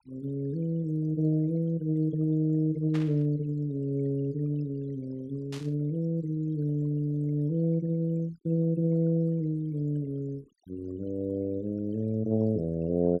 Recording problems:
noise reduction artefacts; signal-to-artefact ratio 25 dB
burst of static; at 3 s and at 5.5 s; peak -9 dB vs average level

